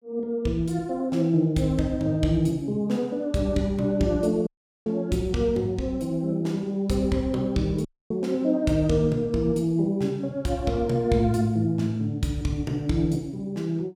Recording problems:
dropout; at 4.5 s and at 8 s

